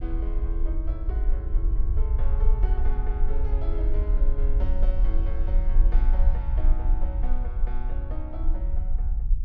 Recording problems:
rumble; below 46 Hz, strongest tone 20 Hz, SNR -13 dB

